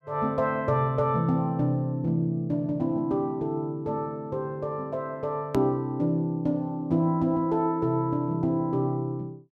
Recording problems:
click at an edit; at 5.5 s

